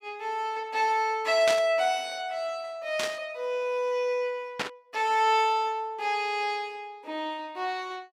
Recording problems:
static burst; at 1.5 s, at 3 s and at 4.5 s; peak +3 dB vs average level

